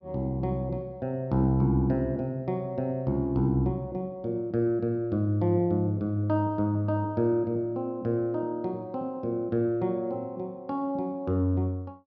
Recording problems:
none

